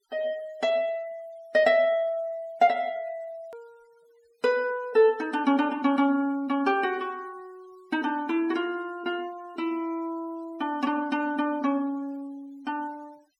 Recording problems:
noise reduction artefacts; signal-to-artefact ratio 27 dB
click at an edit; at 3.5 s

